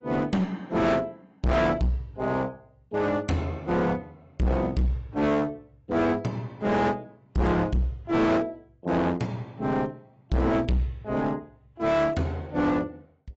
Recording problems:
codec artefacts; AAC, log-spectral distance 2 dB, nothing above 7.8 kHz
distortion; hard clipping, uneven, signal-to-distortion ratio 5 dB

